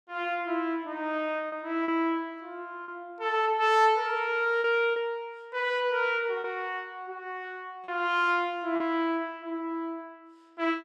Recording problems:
packet loss; 3% of the sound replaced, filled with repeated pitch periods

